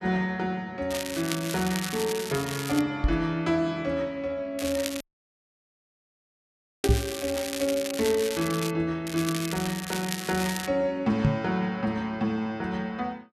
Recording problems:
crackle; from 1 to 3 s, from 4.5 to 8.5 s and from 9 to 11 s; loose cable, SNR 7 dB
knock on the microphone; at 3 s, at 7 s and at 11 s; peak +9 dB vs average level
audio cutting out; at 5 s for 2 s

